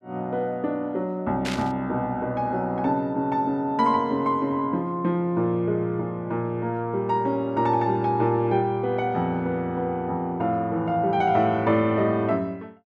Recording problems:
burst of static; at 1.5 s; peak -3 dB vs average level

